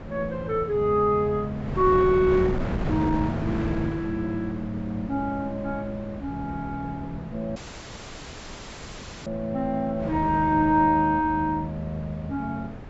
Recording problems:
treble missing; nothing above 7.7 kHz
wind on the microphone; below 430 Hz, SNR 9 dB
audio cutting out; at 7.5 s for 1.5 s

